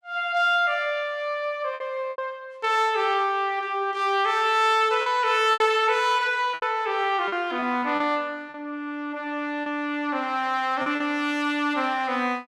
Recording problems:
lost packets; 5% of the sound replaced, filled with repeated pitch periods

